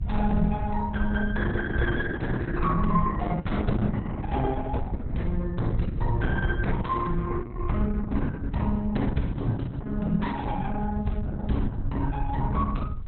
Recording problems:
lossy compression; Opus, log-spectral distance 3 dB, nothing above 3.7 kHz
rumble; below 90 Hz, SNR 4 dB

